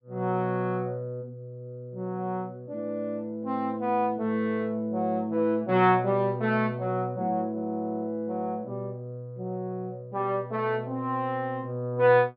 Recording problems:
low-pass filter; nothing above 5.5 kHz

